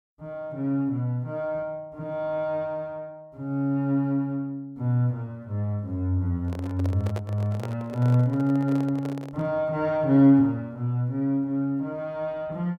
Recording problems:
microphone handling noise; from 6.5 to 9.5 s; peak -6 dB vs average level

